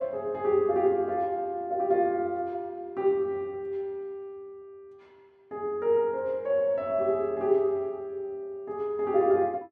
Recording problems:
none

